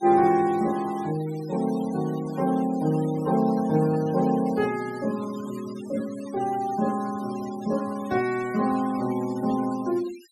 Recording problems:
noise reduction artefacts; signal-to-artefact ratio 19 dB

